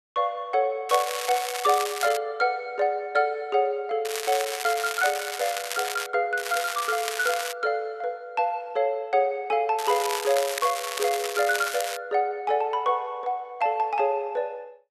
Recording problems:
crackle; 4 times, first at 1 s; loose cable, SNR 6 dB

